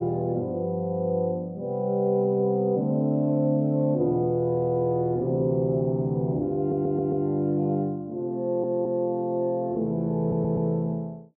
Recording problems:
stutter; at 6.5 s, at 8.5 s and at 10 s

